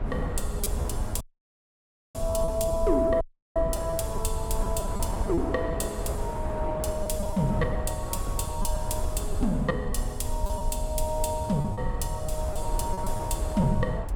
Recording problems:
rumble; below 70 Hz, SNR 4 dB
wind noise; below 830 Hz, SNR 10 dB
lost packets; 7% of the sound replaced, filled with repeated pitch periods
audio cutting out; at 1 s for 1 s and at 3 s

